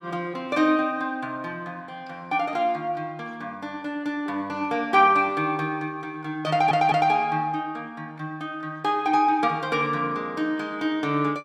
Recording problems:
audio stuttering; at 6.5 s

